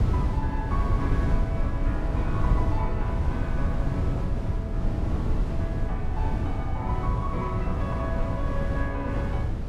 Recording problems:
low-frequency rumble; below 80 Hz, SNR 1 dB
wind noise; below 150 Hz, SNR -5 dB

